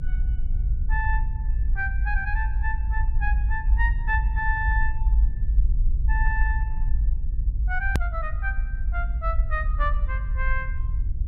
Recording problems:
rumble; below 54 Hz, SNR -4 dB
click at an edit; at 8 s

